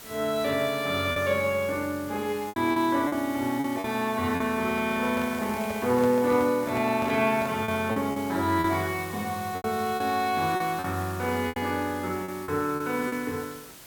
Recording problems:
background hiss; slope -1 dB per octave, SNR 16 dB
packet loss; 7% of the sound replaced, filled with repeated pitch periods
microphone handling noise; from 4.5 to 8 s; peak -6 dB vs average level

